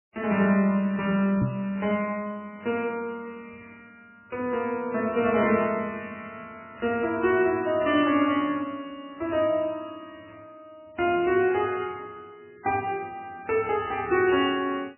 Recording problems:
lossy compression; MP3, log-spectral distance 3 dB, nothing above 2.4 kHz
microphone thump; at 1.5 s; peak +7 dB vs average level

